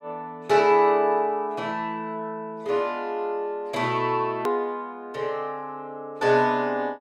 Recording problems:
click at an edit; at 4.5 s

